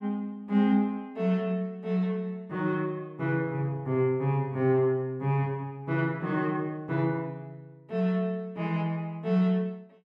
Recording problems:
none

